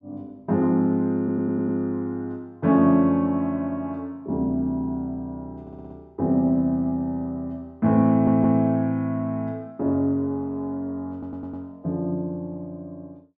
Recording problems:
stutter; 4 times, first at 1 s

